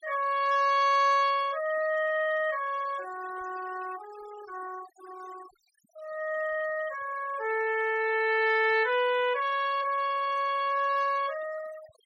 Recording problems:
denoising artefacts; signal-to-artefact ratio 20 dB

